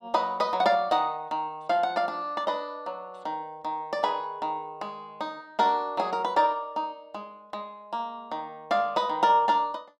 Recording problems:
none

